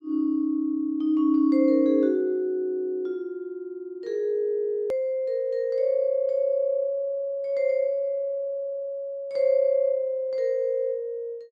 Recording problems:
edit click; at 5 s

